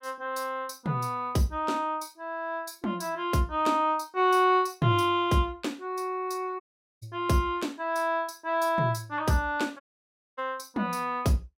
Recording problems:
dropout; at 6.5 s and at 10 s for 0.5 s

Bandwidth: 16 kHz